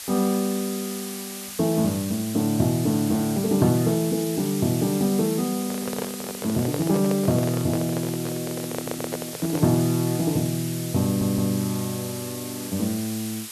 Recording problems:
background hiss; slope +2 dB per octave, SNR 9 dB
handling noise; from 5.5 to 10 s; peak -2 dB vs average level
audio stuttering; at 8.5 s and at 11 s

